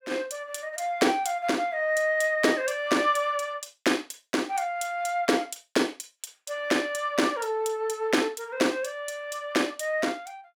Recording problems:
none

